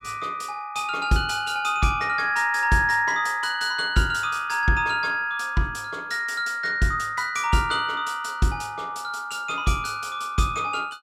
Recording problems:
none

